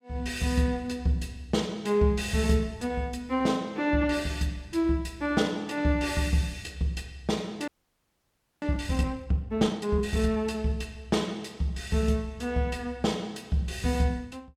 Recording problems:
frozen audio; at 7.5 s for 1 s

